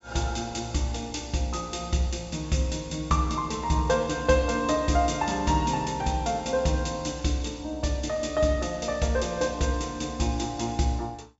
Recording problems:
low-pass filter; nothing above 8 kHz

